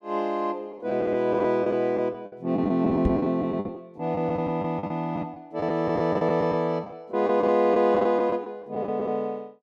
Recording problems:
packet loss; 11% of the sound replaced, filled with the last packet
microphone thump; at 3 s; peak +2 dB vs average level

